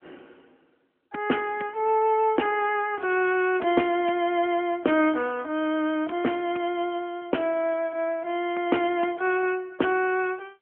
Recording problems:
phone line; 220 Hz to 3.3 kHz, AMR-NB

